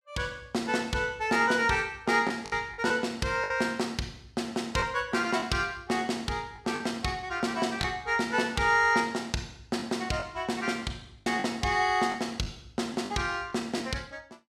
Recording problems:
lost packets; 4% of the sound replaced, filled with the last packet

